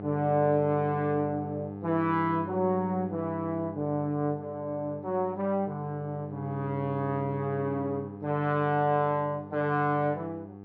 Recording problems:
electrical hum; 50 Hz, harmonics up to 1.3 kHz, SNR 11 dB

